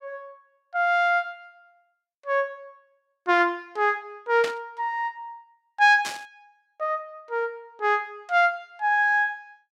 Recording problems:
static burst; at 4.5 s and at 6 s; peak -4 dB vs average level

